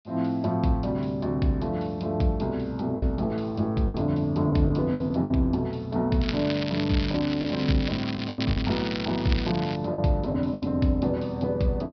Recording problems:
low-pass filter; nothing above 5.5 kHz
lost packets; 5% of the sound replaced, filled with the last packet
crackle; from 6 to 10 s; loose cable, SNR 9 dB

